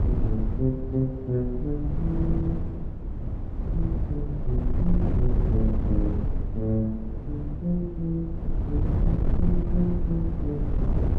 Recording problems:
wind on the microphone; below 110 Hz, SNR -1 dB

